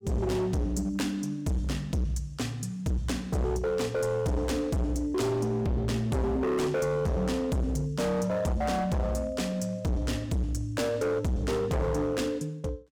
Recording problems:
distorted audio; hard clipping, signal-to-distortion ratio 6 dB

